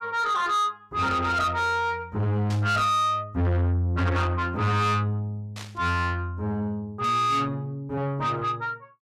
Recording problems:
distortion; soft clipping, signal-to-distortion ratio 6 dB
static burst; at 2.5 s, at 5.5 s and at 7 s; peak -10 dB vs average level

